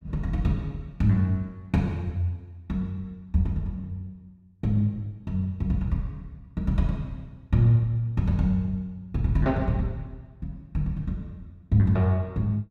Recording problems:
none

